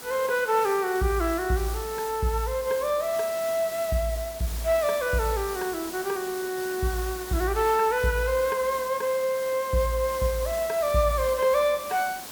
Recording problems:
background hiss; slope -2 dB per octave, SNR 12 dB

